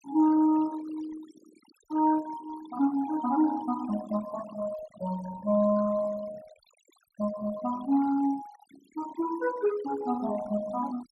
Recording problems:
noise reduction artefacts; signal-to-artefact ratio 18 dB

